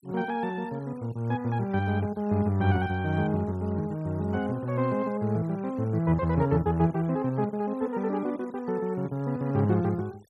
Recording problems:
noise reduction artefacts; signal-to-artefact ratio 27 dB

